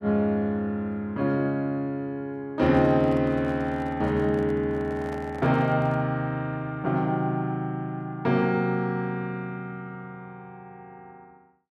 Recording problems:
microphone handling noise; from 2.5 to 6 s; peak -11 dB vs average level

